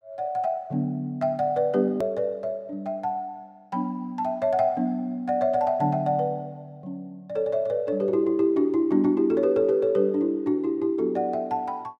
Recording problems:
hard cut with a click; at 2 s

